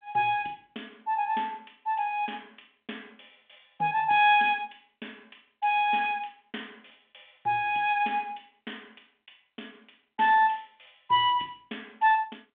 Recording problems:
phone line; 240 Hz to 3.5 kHz, G.726

